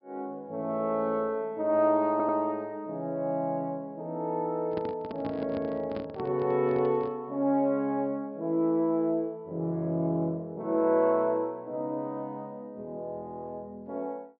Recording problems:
treble missing; nothing above 5.2 kHz
stutter; at 2 s
handling noise; from 4.5 to 7 s; peak -5 dB vs average level

